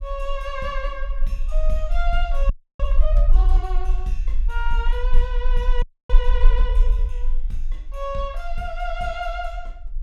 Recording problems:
rumble; below 38 Hz, strongest tone 18 Hz, SNR -6 dB
audio freezing; at 2.5 s and at 6 s

